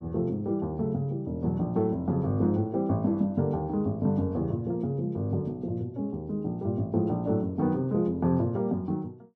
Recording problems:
none

